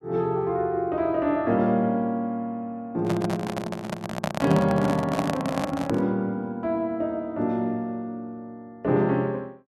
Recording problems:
microphone handling noise; from 3 to 6 s; peak +3 dB vs average level

